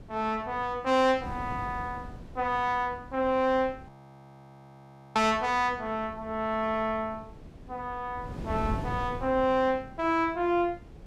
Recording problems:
wind on the microphone; below 250 Hz, SNR 15 dB
audio freezing; at 4 s for 1.5 s

